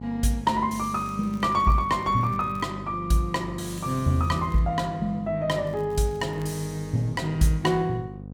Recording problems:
hum; 50 Hz, harmonics up to 800 Hz, SNR 13 dB
crackling; from 1 to 2.5 s, at 3.5 s and at 5.5 s; loose cable, SNR 30 dB

